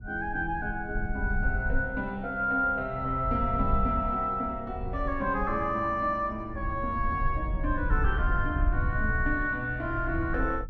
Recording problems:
wind on the microphone; below 72 Hz, SNR 5 dB

